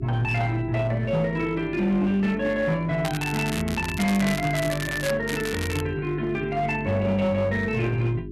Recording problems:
distorted audio; hard clipping, uneven, signal-to-distortion ratio 11 dB
electrical hum; 50 Hz, harmonics up to 400 Hz, SNR 13 dB
crackle; from 3 to 5 s and at 5.5 s; loose cable, SNR 9 dB

